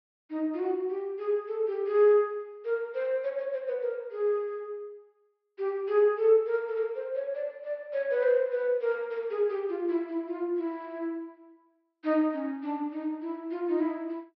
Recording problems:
treble cut off; nothing above 5.5 kHz

